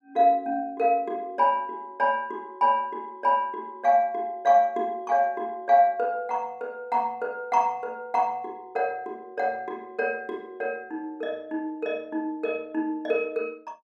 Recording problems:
none

